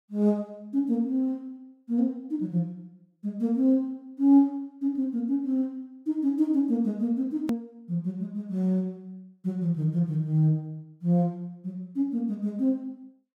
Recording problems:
click at an edit; at 7.5 s

